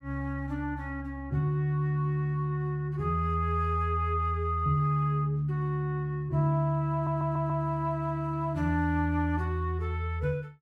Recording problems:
audio stuttering; at 7 s

